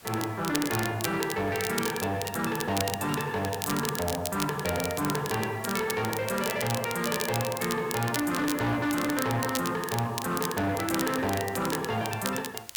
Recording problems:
distortion; soft clipping, signal-to-distortion ratio 10 dB
hiss; slope -1 dB per octave, SNR 21 dB
crackle; vinyl, SNR 7 dB

